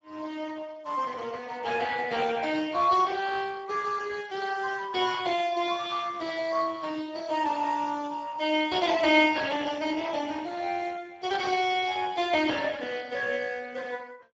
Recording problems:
lossy codec; Speex, log-spectral distance 5 dB

